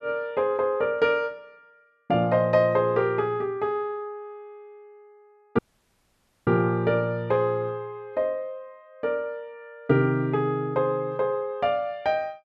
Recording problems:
dropout; at 5.5 s for 1 s

